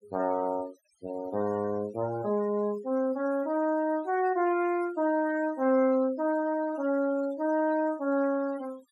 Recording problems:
denoising artefacts; signal-to-artefact ratio 22 dB

